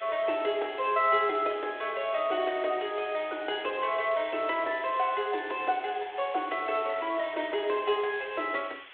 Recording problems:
telephone audio; 280 Hz to 3.7 kHz, G.726
background hiss; SNR 18 dB

